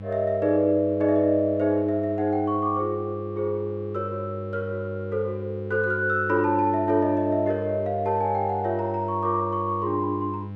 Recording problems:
hum; 50 Hz, harmonics up to 800 Hz, SNR 11 dB

